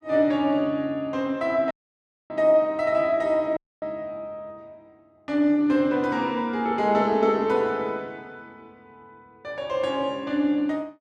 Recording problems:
dropout; at 1.5 s for 0.5 s and at 3.5 s

